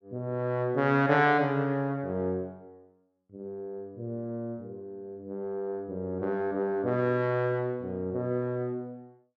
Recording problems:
none

